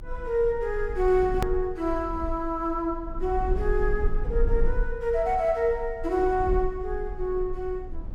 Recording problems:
low-frequency rumble; below 48 Hz, strongest tone 24 Hz, SNR 7 dB
hard cut with a click; at 1.5 s

